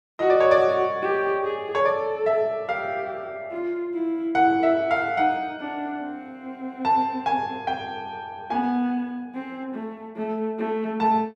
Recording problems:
none

